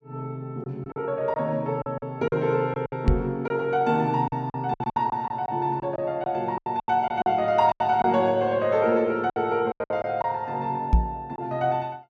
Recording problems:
lost packets; 10% of the sound replaced, filled with silence
microphone bump; at 3 s and at 11 s; peak +9 dB vs average level

